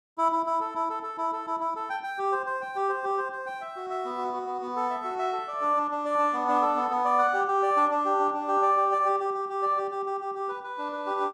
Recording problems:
none

